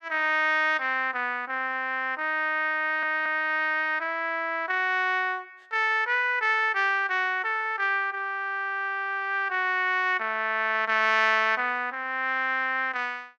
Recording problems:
audio stuttering; at 3 s

